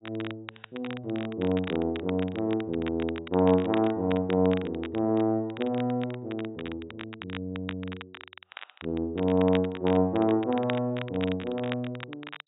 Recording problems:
treble cut off; nothing above 4 kHz
crackling; vinyl, SNR 15 dB

